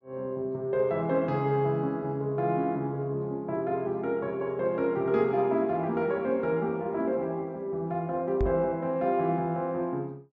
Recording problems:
treble cut off; nothing above 8 kHz
microphone bump; at 8.5 s; peak +1 dB vs average level

